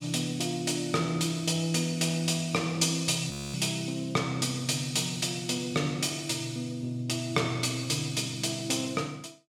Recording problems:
audio freezing; at 3.5 s

